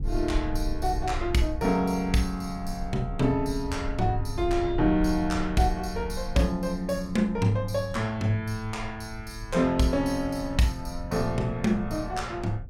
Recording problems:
rumble; below 74 Hz, SNR 10 dB

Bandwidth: 17.5 kHz